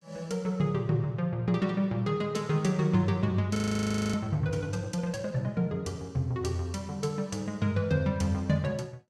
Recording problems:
audio freezing; at 3.5 s for 0.5 s

